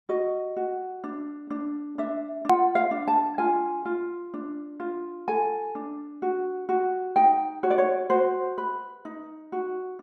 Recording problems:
edit click; at 2.5 s

